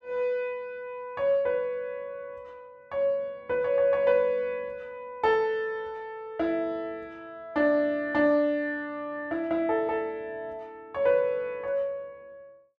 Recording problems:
none

